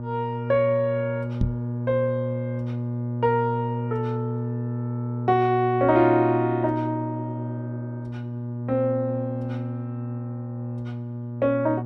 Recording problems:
hum; 60 Hz, harmonics up to 840 Hz, SNR 5 dB
microphone bump; at 1.5 s; peak +2 dB vs average level

